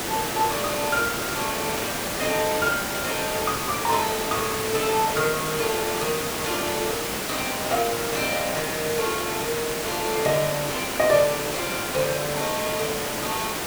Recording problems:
hiss; slope -3 dB per octave, SNR 1 dB

